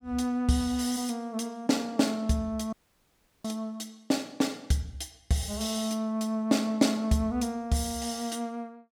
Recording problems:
dropout; at 2.5 s for 0.5 s

